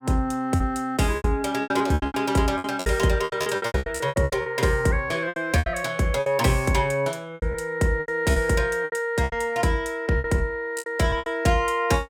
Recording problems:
packet loss; 17% of the sound replaced, filled with repeated pitch periods

